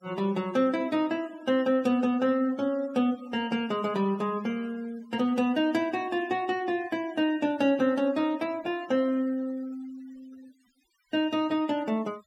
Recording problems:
noise reduction artefacts; signal-to-artefact ratio 24 dB

